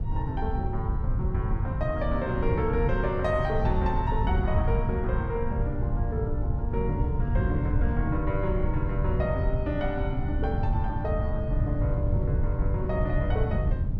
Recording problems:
wind noise; below 120 Hz, SNR -2 dB

